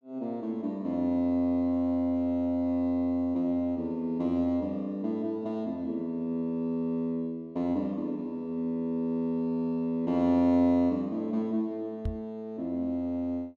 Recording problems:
knock on the microphone; at 12 s; peak 0 dB vs average level

